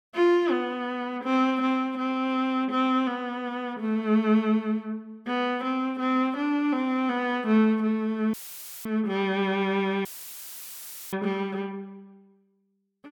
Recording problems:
dropout; at 8.5 s for 0.5 s and at 10 s for 1 s; filled with static

